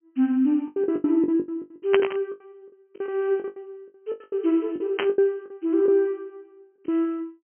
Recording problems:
treble cut off; nothing above 3.1 kHz
packet loss; 18% of the sound replaced, filled with the last packet
static burst; at 2 s and at 5 s; peak +3 dB vs average level

